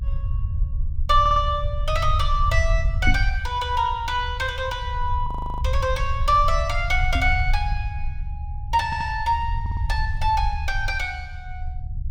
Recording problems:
rumble; below 74 Hz, SNR 4 dB
stutter; at 1 s, at 9 s and at 9.5 s
knock on the microphone; at 3 s and at 7 s; peak +1 dB vs average level
frozen audio; at 5.5 s

